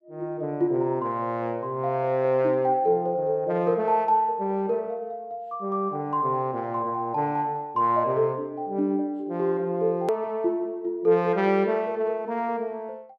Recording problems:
edit click; at 10 s

